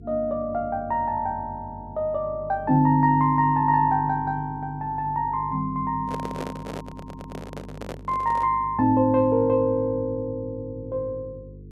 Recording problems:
hum; 50 Hz, harmonics up to 450 Hz, SNR 19 dB
microphone handling noise; from 6 to 8.5 s; peak -6 dB vs average level
stutter; at 7 s

